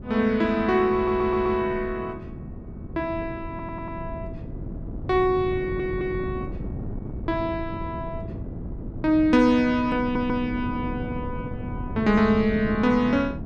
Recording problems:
wind noise; below 240 Hz, SNR 11 dB
audio stuttering; 4 times, first at 1 s

